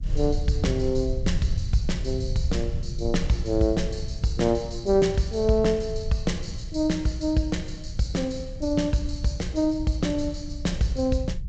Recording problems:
codec artefacts; G.722, log-spectral distance 2 dB, nothing above 7.6 kHz
low-frequency rumble; below 86 Hz, SNR 7 dB

